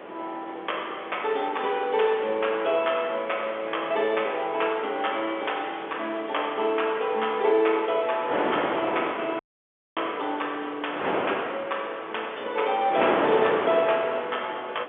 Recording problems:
phone line; 300 Hz to 3.5 kHz, G.711
hiss; SNR 27 dB
wind noise; below 1.2 kHz, SNR 6 dB
crackle; from 1.5 to 3 s and from 6.5 to 9 s; loose cable, SNR 29 dB
audio cutting out; at 9.5 s for 0.5 s

